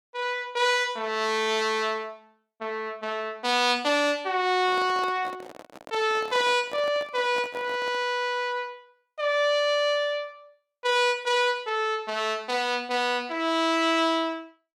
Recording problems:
microphone handling noise; from 4.5 to 8 s; peak -9 dB vs average level

